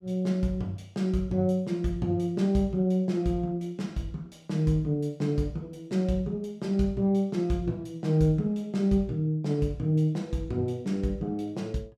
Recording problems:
none

